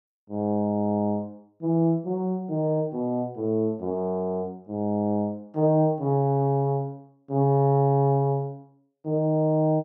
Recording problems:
none

